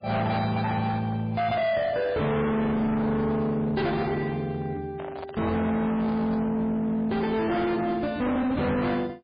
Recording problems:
lossy compression; MP3, log-spectral distance 2 dB
distorted audio; hard clipping, signal-to-distortion ratio 7 dB
handling noise; from 5 to 6.5 s; peak -8 dB vs average level

